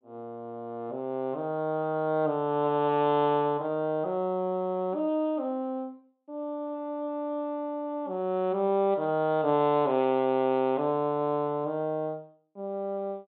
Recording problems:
treble cut off; nothing above 4 kHz

